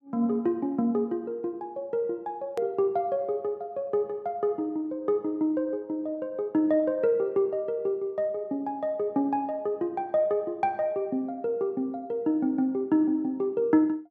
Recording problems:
hard cut with a click; at 2.5 s

